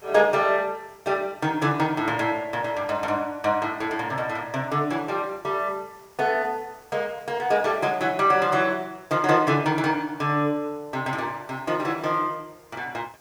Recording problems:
background hiss; SNR 29 dB

